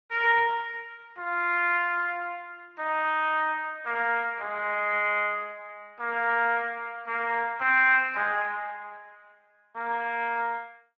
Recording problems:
lossy codec; Speex, log-spectral distance 2 dB

